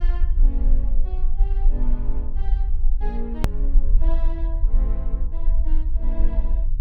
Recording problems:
low-frequency rumble; below 38 Hz, strongest tone 20 Hz, SNR -14 dB
hard cut with a click; at 3.5 s

